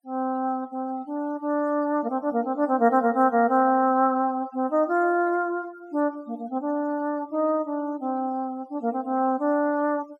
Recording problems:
noise reduction artefacts; signal-to-artefact ratio 28 dB

